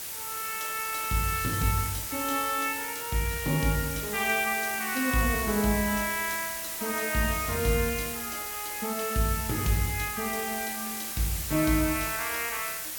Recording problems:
hiss; slope +1 dB per octave, SNR 4 dB

